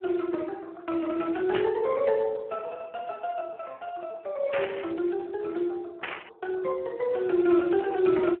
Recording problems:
phone line; 280 Hz to 2.8 kHz, Speex
static burst; at 1.5 s, at 4.5 s and at 6 s; peak 0 dB vs average level

